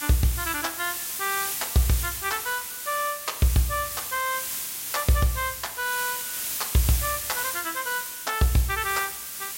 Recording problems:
background hiss; slope +2 dB per octave, SNR 3 dB

